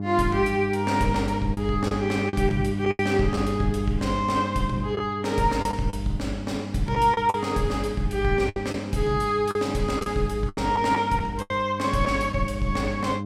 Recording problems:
electrical hum; 50 Hz, harmonics up to 700 Hz, SNR 6 dB
lost packets; 6% of the sound replaced, filled with the last packet

